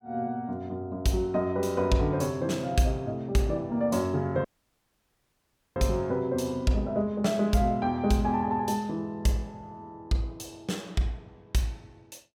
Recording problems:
dropout; at 4.5 s for 1.5 s

